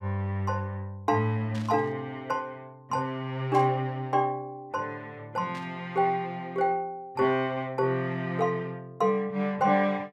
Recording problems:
static burst; at 1.5 s, at 3.5 s and at 5.5 s; peak -12 dB vs average level

